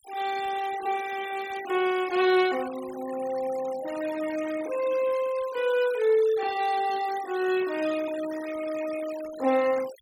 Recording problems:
denoising artefacts; signal-to-artefact ratio 16 dB

